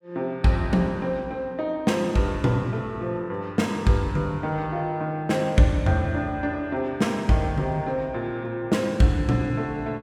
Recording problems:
none

